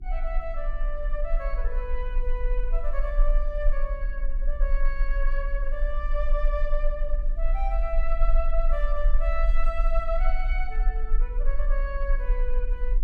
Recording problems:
hum; 50 Hz, harmonics up to 400 Hz, SNR 18 dB
low-frequency rumble; below 36 Hz, strongest tone 24 Hz, SNR -6 dB

